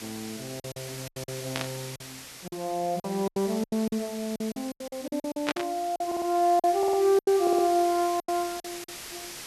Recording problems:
hiss; slope 0 dB per octave, SNR 13 dB
lost packets; 14% of the sound replaced, filled with silence
burst of static; at 1.5 s and at 5.5 s; peak +2 dB vs average level
audio stuttering; at 6 s, at 7 s and at 7.5 s

